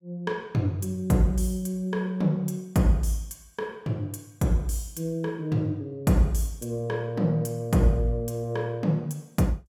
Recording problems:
none

